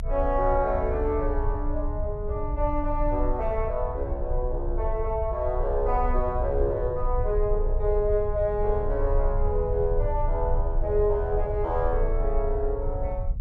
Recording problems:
low-frequency rumble; below 60 Hz, strongest tone 28 Hz, SNR 3 dB

